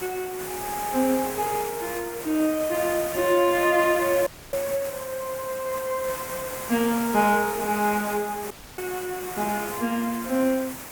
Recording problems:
hiss; slope -3 dB per octave, SNR 9 dB
dropout; at 4.5 s and at 8.5 s

